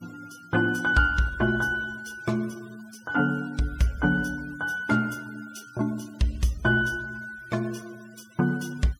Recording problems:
noise reduction artefacts; signal-to-artefact ratio 24 dB

